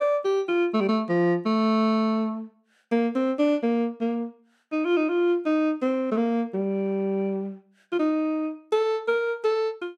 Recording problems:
none

